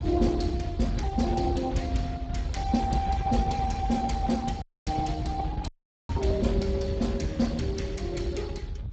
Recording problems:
lossy codec; Speex, log-spectral distance 2 dB, nothing above 7.6 kHz
low-frequency rumble; below 120 Hz, SNR 3 dB
audio cutting out; at 4.5 s and at 5.5 s

